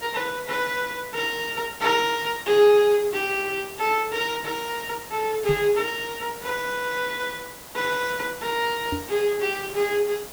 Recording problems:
background hiss; slope -3 dB per octave, SNR 14 dB
knock on the microphone; at 5.5 s and at 9 s; peak -2 dB vs average level

